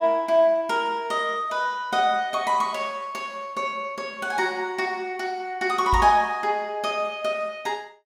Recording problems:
microphone bump; at 6 s; peak +1 dB vs average level

